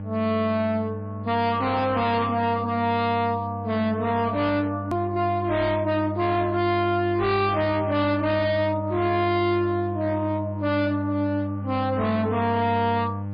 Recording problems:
lossy compression; MP3, log-spectral distance 2 dB, nothing above 4.4 kHz
distorted audio; hard clipping, uneven, signal-to-distortion ratio 6 dB
hum; 50 Hz, harmonics up to 900 Hz, SNR 8 dB
click at an edit; at 5 s

